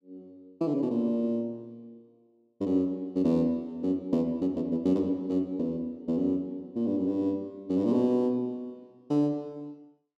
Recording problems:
none

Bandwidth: 13 kHz